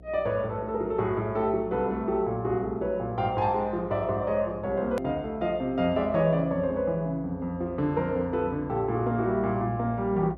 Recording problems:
electrical hum; 60 Hz, harmonics up to 720 Hz, SNR 20 dB
hard cut with a click; at 5 s

